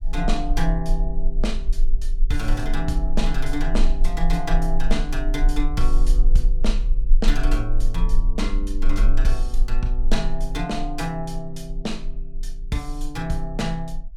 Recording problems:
rumble; below 34 Hz, strongest tone 20 Hz, SNR -2 dB

